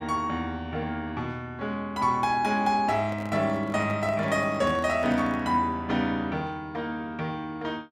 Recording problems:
handling noise; from 3 to 5.5 s; peak -8 dB vs average level

